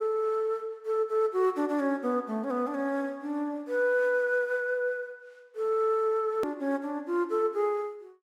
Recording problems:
hard cut with a click; at 6.5 s

